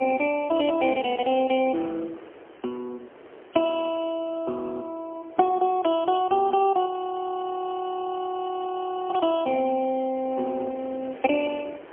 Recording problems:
telephone audio; 280 Hz to 3.2 kHz, AMR-NB, then MP3
wind on the microphone; below 970 Hz, SNR 21 dB
frozen audio; at 7 s for 2 s

